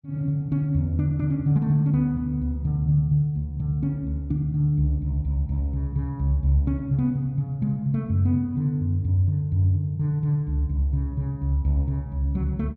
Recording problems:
none

